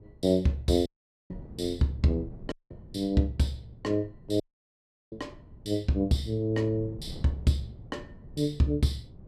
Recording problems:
wind on the microphone; below 190 Hz, SNR 19 dB
audio cutting out; at 1 s, at 2.5 s and at 4.5 s for 0.5 s

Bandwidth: 14.5 kHz